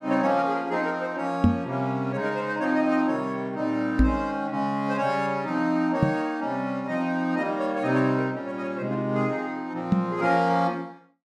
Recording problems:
microphone thump; 4 times, first at 1.5 s; peak +9 dB vs average level

